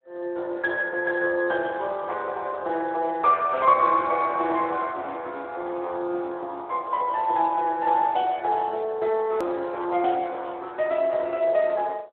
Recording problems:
phone line; 300 Hz to 3.3 kHz, Speex
edit click; at 9.5 s

